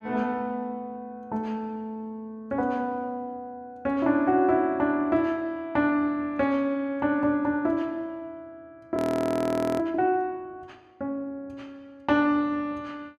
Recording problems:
frozen audio; at 9 s for 1 s

